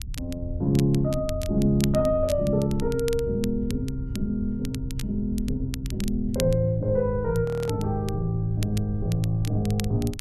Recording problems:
rumble; below 90 Hz, SNR 10 dB
crackling; vinyl, SNR 16 dB
audio freezing; at 7.5 s

